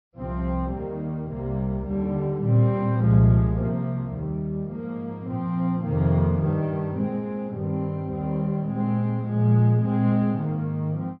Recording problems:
treble missing; nothing above 5.5 kHz

